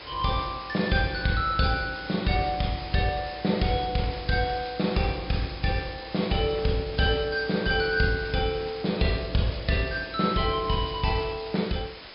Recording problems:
low-pass filter; nothing above 5.5 kHz
background hiss; slope -1 dB per octave, SNR 15 dB

